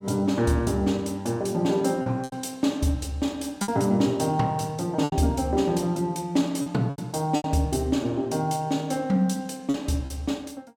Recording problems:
lost packets; 5% of the sound replaced, filled with repeated pitch periods

